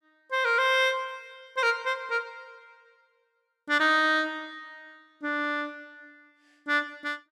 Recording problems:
none

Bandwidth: 14 kHz